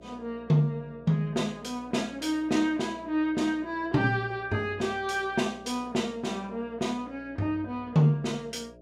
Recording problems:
electrical hum; 60 Hz, harmonics up to 660 Hz, SNR 23 dB

